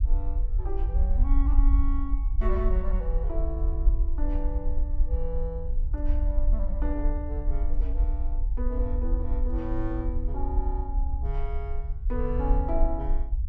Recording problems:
rumble; below 52 Hz, SNR -7 dB

